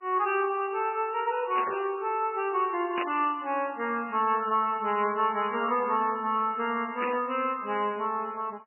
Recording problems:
codec artefacts; MP3, log-spectral distance 4 dB, nothing above 2.9 kHz
static burst; at 1.5 s, at 3 s and at 7 s; peak -1 dB vs average level

